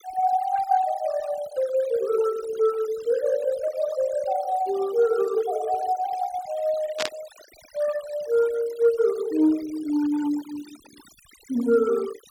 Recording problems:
denoising artefacts; signal-to-artefact ratio 19 dB
burst of static; at 7 s; peak +2 dB vs average level

